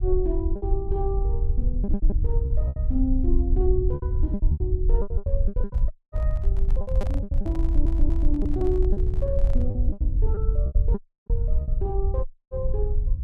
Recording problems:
low-frequency rumble; below 64 Hz, SNR -6 dB
lost packets; 13% of the sound replaced, filled with repeated pitch periods
handling noise; from 5.5 to 9.5 s; peak -3 dB vs average level
dropout; at 6 s, at 11 s and at 12 s
stutter; at 7.5 s

